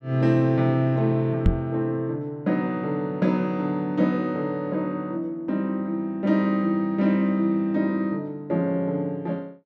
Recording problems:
microphone thump; at 1.5 s; peak +7 dB vs average level

